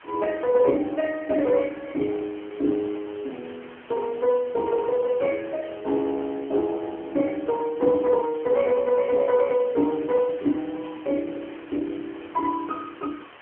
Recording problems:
telephone audio; 240 Hz to 2.2 kHz, AMR-NB
hiss; SNR 22 dB

